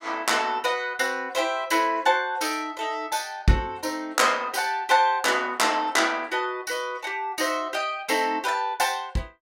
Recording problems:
none

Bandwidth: 16.5 kHz